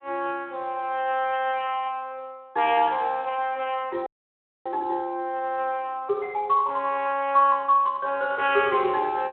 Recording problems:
phone line; 300 Hz to 3.3 kHz, Speex
frozen audio; at 4 s for 0.5 s

